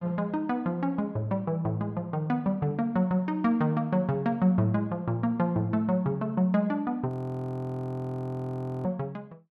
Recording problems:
frozen audio; at 7 s for 2 s

